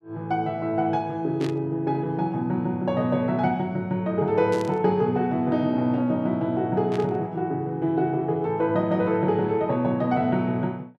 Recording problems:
burst of static; at 1.5 s, at 4.5 s and at 7 s; peak -10 dB vs average level

